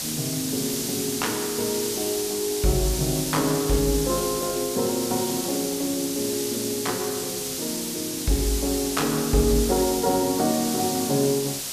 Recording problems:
hiss; SNR 3 dB

